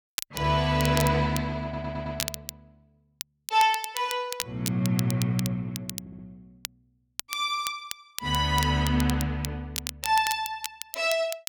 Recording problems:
crackling; vinyl, SNR 9 dB
audio stuttering; at 1.5 s and at 6 s

